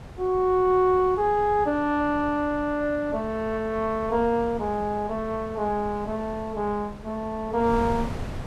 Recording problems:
wind on the microphone; below 430 Hz, SNR 14 dB

